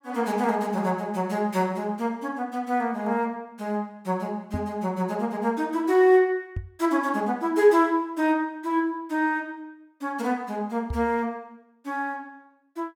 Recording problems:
knock on the microphone; at 4.5 s, at 6.5 s and at 11 s; peak -2 dB vs average level

